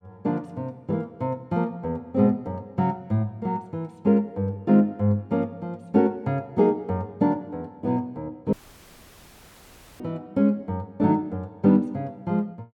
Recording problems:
dropout; at 8.5 s for 1.5 s

